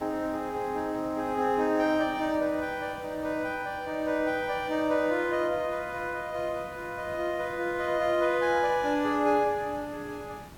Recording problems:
hiss; slope -5 dB per octave, SNR 20 dB

